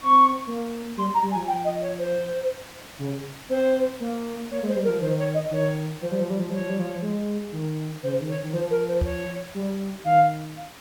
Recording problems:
background hiss; slope -2 dB per octave, SNR 17 dB
knock on the microphone; at 9 s; peak +3 dB vs average level

